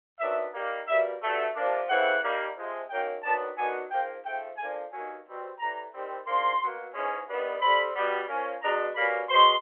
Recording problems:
phone line; 340 Hz to 3.3 kHz, G.711

